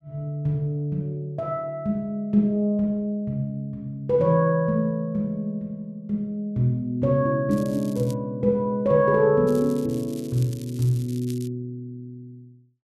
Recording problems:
crackling; at 7.5 s and from 9.5 to 11 s; loose cable, SNR 22 dB

